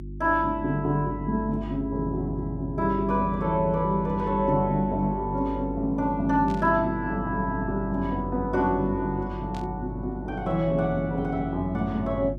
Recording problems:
mains hum; 50 Hz, harmonics up to 350 Hz, SNR 10 dB
burst of static; at 6.5 s and at 9.5 s; peak -15 dB vs average level

